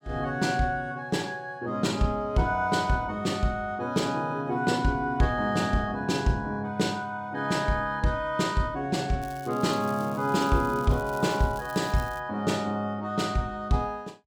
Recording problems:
crackle; from 9 to 12 s; loose cable, SNR 21 dB

